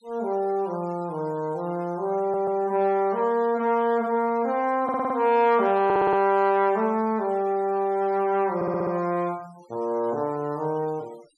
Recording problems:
noise reduction artefacts; signal-to-artefact ratio 27 dB
audio stuttering; 4 times, first at 2 s

